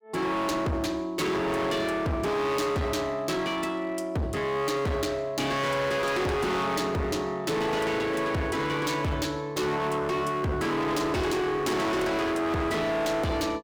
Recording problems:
distorted audio; hard clipping, signal-to-distortion ratio 6 dB

